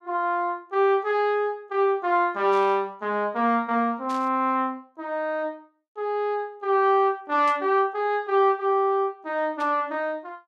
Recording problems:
burst of static; 4 times, first at 2.5 s; peak -14 dB vs average level

